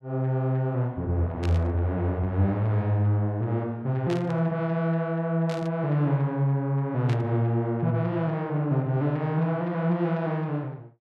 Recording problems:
static burst; 4 times, first at 1.5 s; peak -8 dB vs average level

